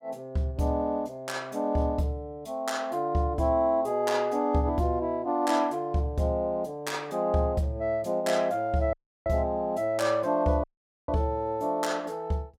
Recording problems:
dropout; at 9 s and at 11 s

